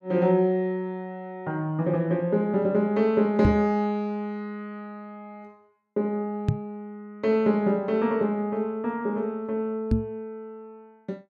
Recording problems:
microphone bump; at 3.5 s, at 6.5 s and at 10 s; peak +7 dB vs average level

